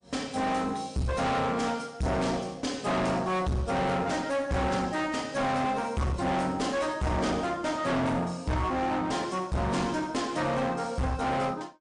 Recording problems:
codec artefacts; MP3, log-spectral distance 3 dB, nothing above 8.7 kHz
distorted audio; hard clipping, uneven, signal-to-distortion ratio 5 dB

